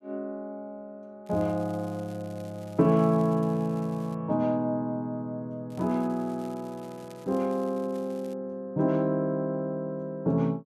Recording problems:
crackle; from 1.5 to 4 s and from 5.5 to 8.5 s; loose cable, SNR 27 dB

